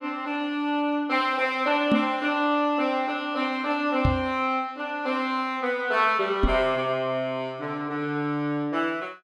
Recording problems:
knock on the microphone; at 2 s, at 4 s and at 6.5 s; peak +5 dB vs average level

